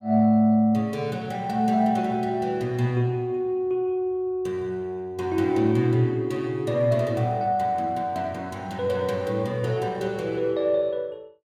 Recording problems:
none

